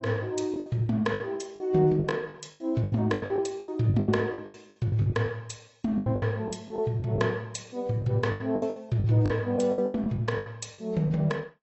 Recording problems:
codec artefacts; AAC, log-spectral distance 3 dB, nothing above 7.8 kHz
lost packets; 17% of the sound replaced, filled with the last packet

